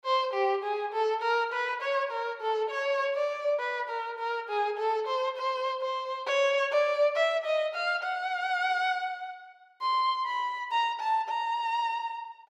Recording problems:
none

